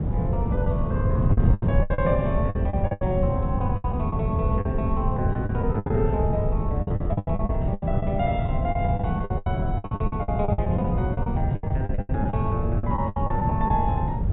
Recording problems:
low-pass filter; nothing above 3.8 kHz
wind noise; below 150 Hz, SNR -3 dB
lost packets; 16% of the sound replaced, filled with the last packet

